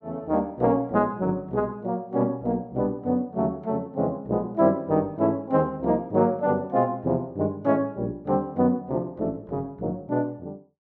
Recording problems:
none

